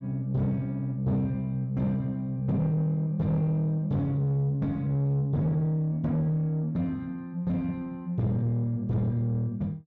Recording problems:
distortion; soft clipping, signal-to-distortion ratio 11 dB

